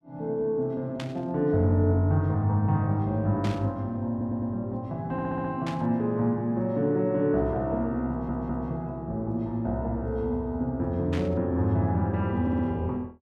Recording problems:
static burst; 4 times, first at 1 s; peak -7 dB vs average level
audio stuttering; 4 times, first at 4 s

